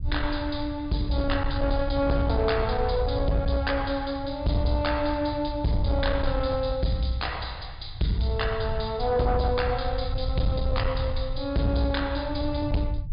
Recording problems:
treble cut off; nothing above 5.1 kHz
distorted audio; soft clipping, signal-to-distortion ratio 11 dB
low-frequency rumble; below 92 Hz, SNR 7 dB

